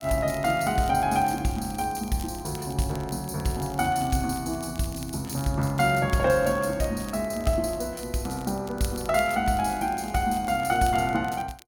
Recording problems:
crackling; vinyl, SNR 22 dB

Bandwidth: 18 kHz